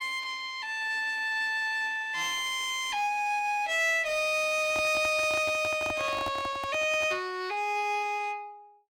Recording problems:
distortion; hard clipping, uneven, signal-to-distortion ratio 11 dB
handling noise; from 4.5 to 7 s; peak -5 dB vs average level

